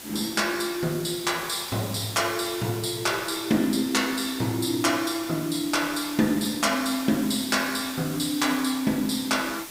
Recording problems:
hiss; slope -1 dB per octave, SNR 12 dB

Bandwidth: 15.5 kHz